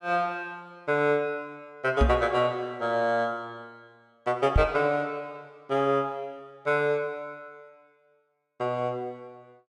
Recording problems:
microphone thump; at 2 s and at 4.5 s; peak +8 dB vs average level

